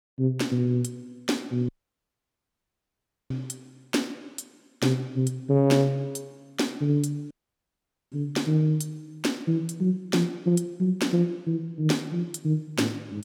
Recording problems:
audio cutting out; at 1.5 s for 1.5 s and at 7.5 s for 1 s

